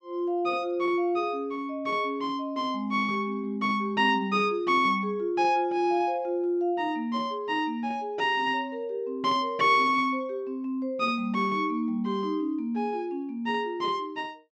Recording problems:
none

